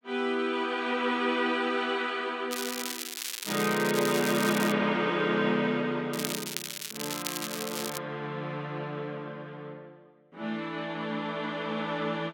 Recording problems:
crackle; from 2.5 to 4.5 s and from 6 to 8 s; loose cable, SNR 5 dB

